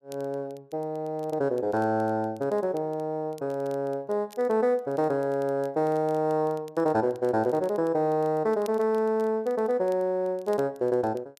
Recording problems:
crackle; vinyl, SNR 30 dB

